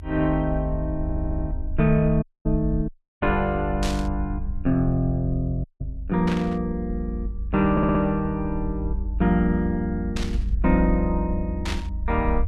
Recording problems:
rumble; below 74 Hz, strongest tone 52 Hz, SNR 6 dB
stutter; at 1 s and at 7.5 s
dropout; at 2 s, at 3 s and at 5.5 s
burst of static; 4 times, first at 4 s; peak -3 dB vs average level

